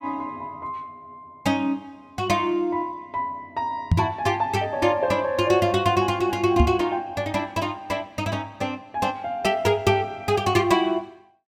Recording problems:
microphone thump; at 4 s and at 6.5 s; peak +8 dB vs average level

